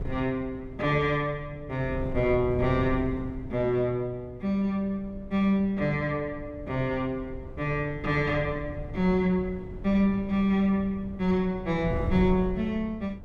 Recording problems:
wind noise; below 150 Hz, SNR 12 dB

